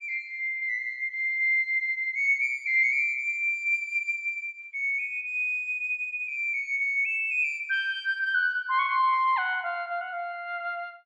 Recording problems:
none

